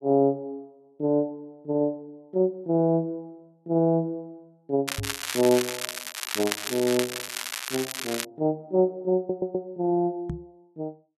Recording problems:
crackle; from 5 to 8.5 s; loose cable, SNR 5 dB
microphone thump; at 5 s and at 10 s; peak -2 dB vs average level
audio stuttering; at 9 s

